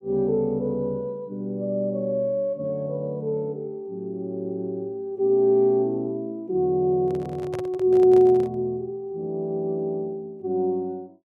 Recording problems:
handling noise; from 7 to 8.5 s; peak -7 dB vs average level

